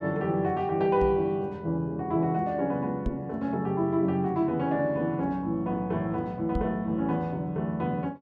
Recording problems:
knock on the microphone; at 1 s, at 3 s and at 6.5 s; peak +1 dB vs average level

